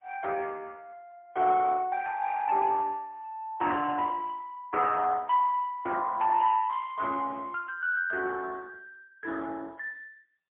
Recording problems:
phone line; 300 Hz to 2.8 kHz, AMR-NB, then MP3

